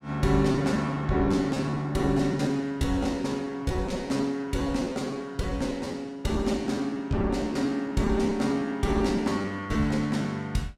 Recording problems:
packet loss; 14% of the sound replaced, filled with repeated pitch periods

